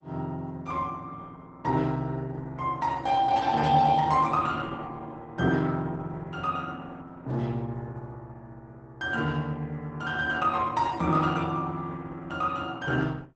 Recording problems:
lossy compression; Opus, log-spectral distance 3 dB, nothing above 8 kHz

